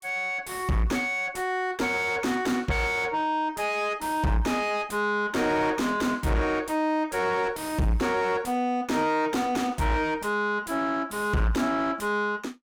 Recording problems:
distorted audio; soft clipping, signal-to-distortion ratio 6 dB

